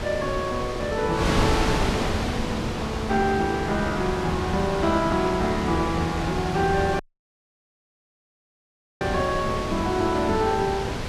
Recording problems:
wind on the microphone; below 1.4 kHz, SNR 3 dB
audio cutting out; at 7 s for 2 s

